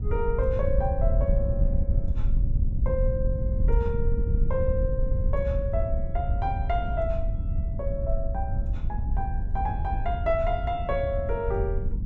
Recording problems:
wind noise; below 80 Hz, SNR -3 dB

